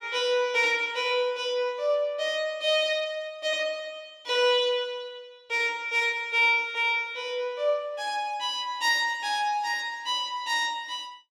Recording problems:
none

